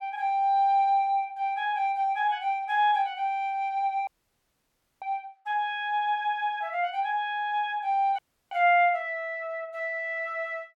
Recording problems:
dropout; at 4 s for 1 s and at 8 s

